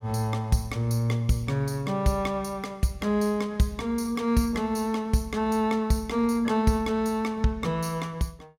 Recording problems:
none

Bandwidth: 16 kHz